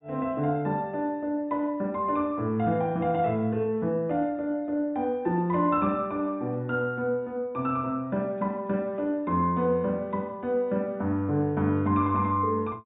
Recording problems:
treble cut off; nothing above 4 kHz

